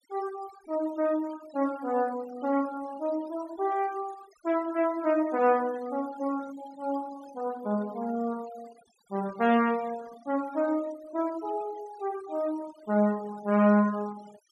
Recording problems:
denoising artefacts; signal-to-artefact ratio 20 dB

